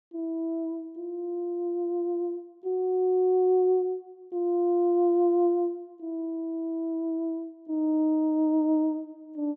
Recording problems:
none

